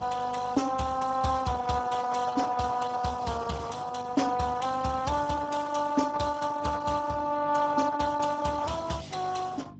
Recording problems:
codec artefacts; Opus, then Speex, log-spectral distance 5 dB, nothing above 7.6 kHz
hum; 50 Hz, harmonics up to 300 Hz, SNR 17 dB

